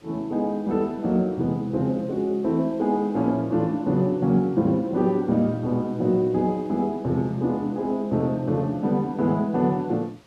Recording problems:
background hiss; slope -4 dB per octave, SNR 30 dB

